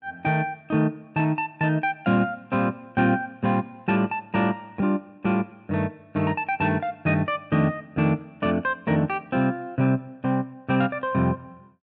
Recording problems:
none

